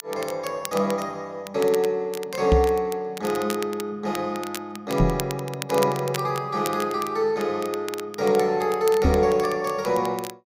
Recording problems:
crackling; vinyl, SNR 14 dB
microphone thump; at 2.5 s, at 5 s and at 9 s; peak +7 dB vs average level

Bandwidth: 15.5 kHz